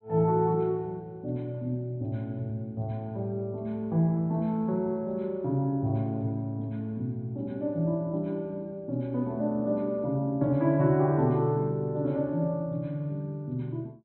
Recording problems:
treble missing; nothing above 4.1 kHz

